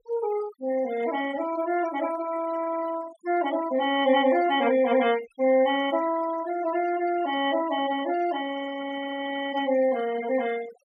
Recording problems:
denoising artefacts; signal-to-artefact ratio 15 dB

